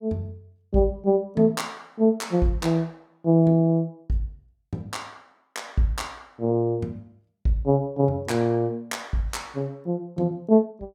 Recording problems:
none

